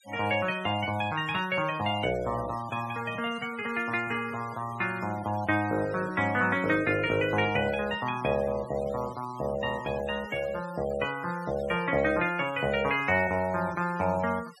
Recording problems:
denoising artefacts; signal-to-artefact ratio 18 dB

